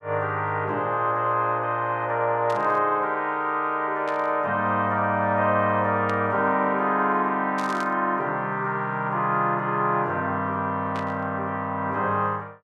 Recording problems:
burst of static; 5 times, first at 2.5 s; peak -11 dB vs average level

